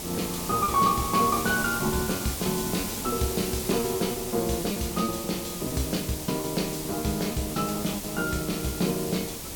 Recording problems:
background hiss; SNR 5 dB
packet loss; 15% of the sound replaced, filled with repeated pitch periods

